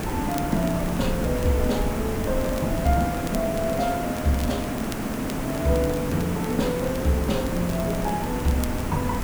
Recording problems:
background hiss; slope -6 dB per octave, SNR 3 dB
low-frequency rumble; below 92 Hz, SNR 10 dB
crackle; vinyl, SNR 18 dB

